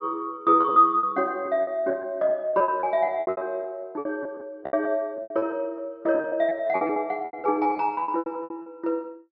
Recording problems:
treble missing; nothing above 5.5 kHz
packet loss; 18% of the sound replaced, filled with repeated pitch periods

